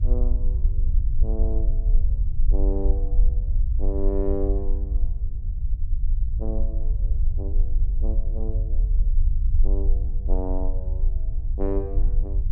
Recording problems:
rumble; below 50 Hz, strongest tone 22 Hz, SNR -8 dB

